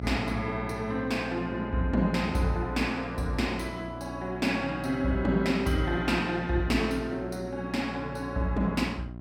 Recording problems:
hum; 60 Hz, harmonics up to 1.1 kHz, SNR 12 dB

